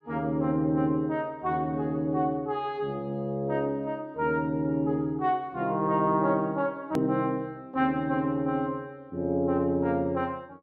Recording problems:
click at an edit; at 7 s

